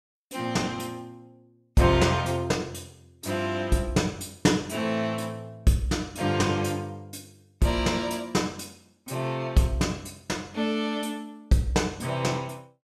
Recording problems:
none

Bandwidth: 14.5 kHz